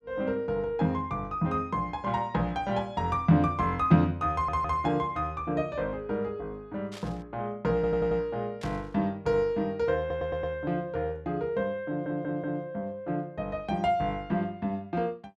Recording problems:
stutter; 4 times, first at 4.5 s
static burst; at 7 s and at 8.5 s; peak -10 dB vs average level

